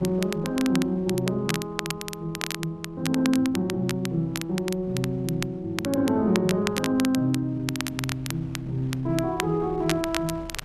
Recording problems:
wind noise; below 250 Hz, SNR 22 dB
crackle; vinyl, SNR 8 dB

